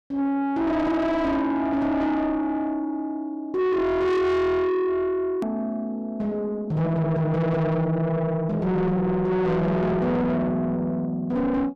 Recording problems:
distortion; soft clipping, signal-to-distortion ratio 7 dB
edit click; at 5.5 s

